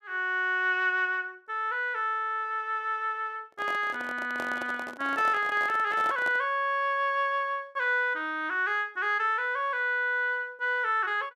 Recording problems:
handling noise; from 3.5 to 6.5 s; peak -6 dB vs average level

